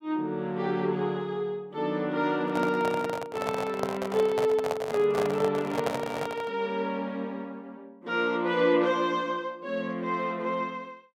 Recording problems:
handling noise; from 2.5 to 6.5 s; peak +2 dB vs average level

